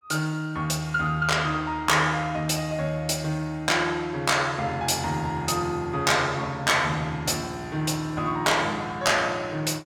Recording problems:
distortion; soft clipping, signal-to-distortion ratio 11 dB

